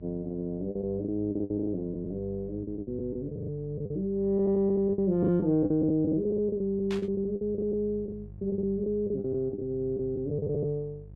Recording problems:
hum; 50 Hz, harmonics up to 500 Hz, SNR 18 dB
lost packets; 13% of the sound replaced, filled with the last packet
static burst; at 7 s; peak -7 dB vs average level

